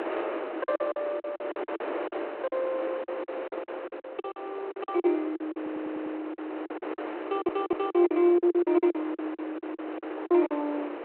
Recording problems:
telephone audio; 300 Hz to 3.4 kHz, G.726
wind noise; below 1 kHz, SNR 8 dB
packet loss; 16% of the sound replaced, filled with silence
stutter; at 5.5 s and at 7.5 s

